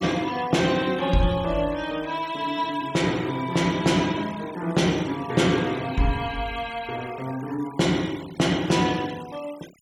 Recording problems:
denoising artefacts; signal-to-artefact ratio 19 dB

